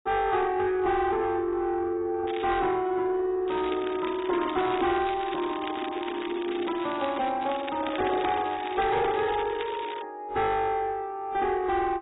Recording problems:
lossy codec; AAC, log-spectral distance 6 dB, nothing above 3.8 kHz
distortion; soft clipping, signal-to-distortion ratio 10 dB
crackle; at 2.5 s, from 3.5 to 7.5 s and from 7.5 to 10 s; loose cable, SNR 14 dB

